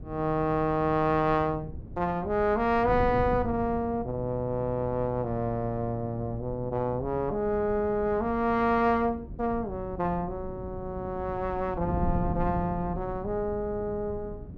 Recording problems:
wind noise; below 190 Hz, SNR 11 dB

